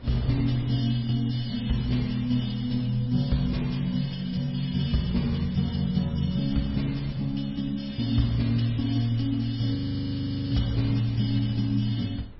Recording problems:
lossy codec; MP3, log-spectral distance 5 dB, nothing above 5.5 kHz
wind on the microphone; below 150 Hz, SNR 19 dB
frozen audio; at 10 s for 1 s

